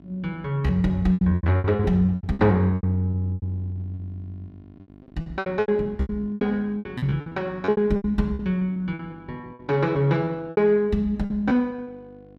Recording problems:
electrical hum; 50 Hz, harmonics up to 1.1 kHz, SNR 24 dB
lost packets; 17% of the sound replaced, filled with repeated pitch periods

